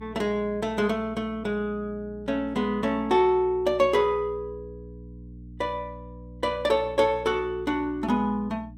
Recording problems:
hum; 60 Hz, harmonics up to 300 Hz, SNR 18 dB

